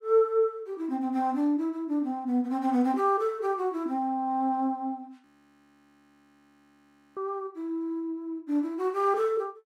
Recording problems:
audio freezing; at 5.5 s for 2 s

